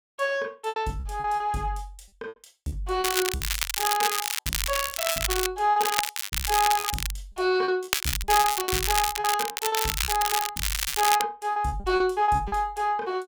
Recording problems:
packet loss; 13% of the sound replaced, filled with repeated pitch periods
crackle; from 3 to 5.5 s, from 6 to 7 s and from 8 to 11 s; loose cable, SNR 1 dB

